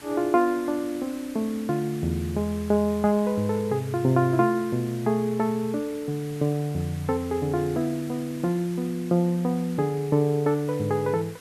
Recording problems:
background hiss; slope -2 dB per octave, SNR 20 dB

